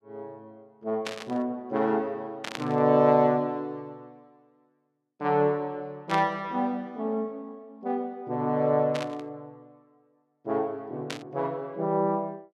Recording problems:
static burst; 5 times, first at 1 s; peak -2 dB vs average level

